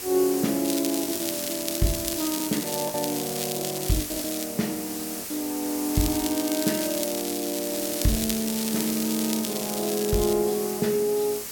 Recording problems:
background hiss; SNR 5 dB
packet loss; 3% of the sound replaced, filled with the last packet
crackle; from 0.5 to 4.5 s and from 6 to 10 s; loose cable, SNR 5 dB

